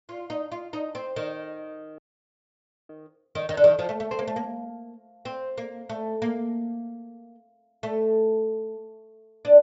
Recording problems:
treble cut off; nothing above 8 kHz
frozen audio; at 2 s for 1 s

